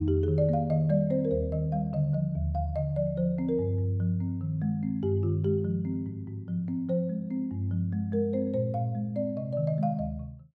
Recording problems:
none

